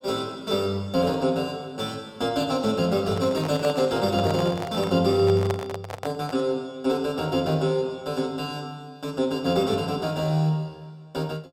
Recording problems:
microphone handling noise; from 3 to 6.5 s; peak -1 dB vs average level

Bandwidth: 16.5 kHz